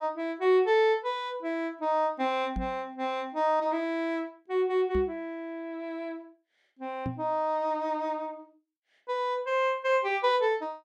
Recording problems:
microphone thump; at 2.5 s, at 5 s and at 7 s; peak -2 dB vs average level

